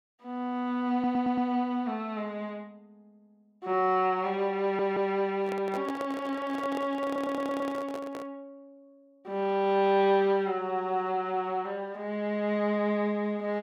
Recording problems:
stutter; at 1 s, at 4.5 s and at 7 s
handling noise; from 5.5 to 8.5 s; peak -5 dB vs average level

